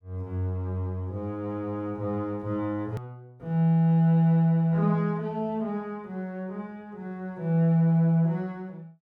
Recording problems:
edit click; at 3 s

